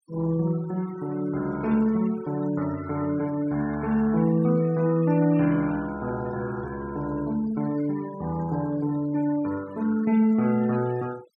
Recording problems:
noise reduction artefacts; signal-to-artefact ratio 20 dB

